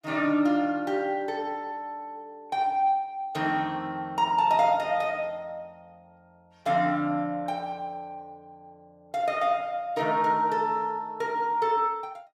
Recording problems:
none

